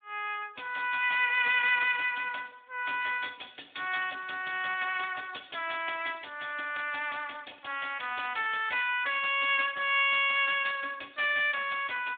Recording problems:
phone line; 340 Hz to 3.5 kHz, Speex

